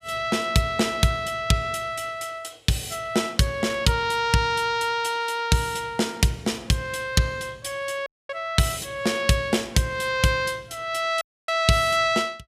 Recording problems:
dropout; at 8 s and at 11 s

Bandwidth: 15 kHz